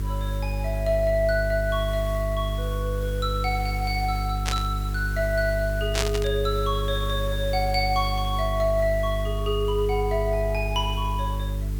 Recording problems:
hum; 50 Hz, harmonics up to 450 Hz, SNR 2 dB
hiss; slope -2 dB per octave, SNR 17 dB
static burst; at 4.5 s and at 6 s; peak +4 dB vs average level

